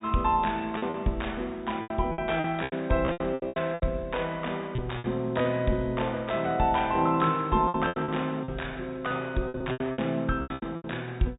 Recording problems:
treble missing; nothing above 4 kHz
packet loss; 13% of the sound replaced, filled with repeated pitch periods

